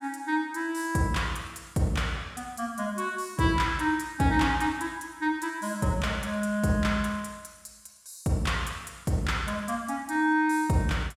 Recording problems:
none

